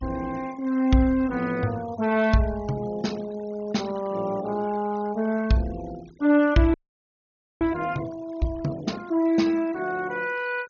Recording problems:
low-pass filter; nothing above 6.7 kHz
noise reduction artefacts; signal-to-artefact ratio 21 dB
frozen audio; at 6.5 s for 1 s

